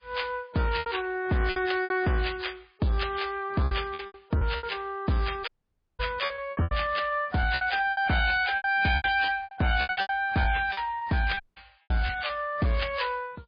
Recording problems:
lossy codec; MP3, log-spectral distance 4 dB
distortion; hard clipping, signal-to-distortion ratio 12 dB
packet loss; 13% of the sound replaced, filled with repeated pitch periods
dropout; at 5.5 s for 0.5 s and at 11 s

